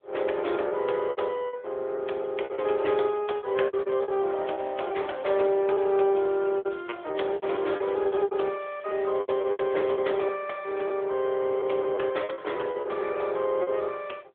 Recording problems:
phone line; 320 Hz to 3.5 kHz, AMR-NB
lost packets; 13% of the sound replaced, filled with repeated pitch periods
crackling; from 3 to 10 s; loose cable, SNR 27 dB

